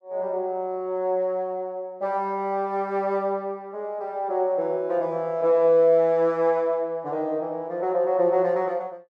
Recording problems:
none

